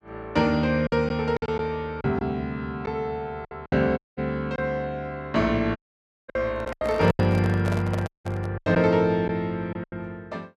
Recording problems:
packet loss; 7% of the sound replaced, filled with silence
audio cutting out; at 4 s, at 6 s for 0.5 s and at 8 s
handling noise; from 6.5 to 8.5 s; peak -3 dB vs average level

